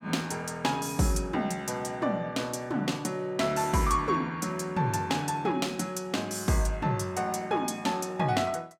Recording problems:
none

